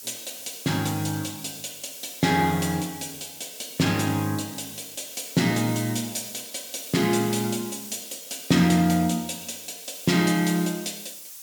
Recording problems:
hiss; SNR 12 dB

